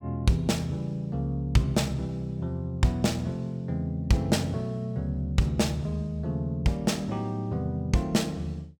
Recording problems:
none

